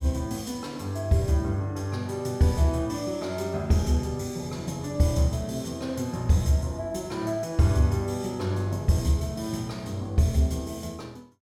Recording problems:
none

